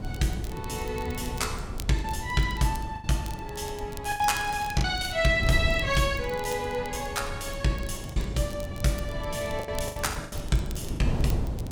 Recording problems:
wind on the microphone; below 170 Hz, SNR 7 dB
crackling; vinyl, SNR 19 dB
lost packets; 5% of the sound replaced, filled with the last packet

